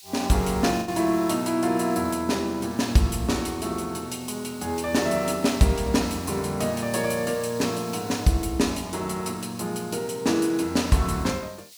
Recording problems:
background hiss; SNR 19 dB
lost packets; 0.7% of the sound replaced, filled with the last packet

